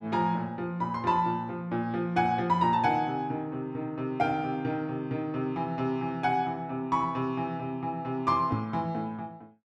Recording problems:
microphone bump; at 8.5 s; peak +2 dB vs average level

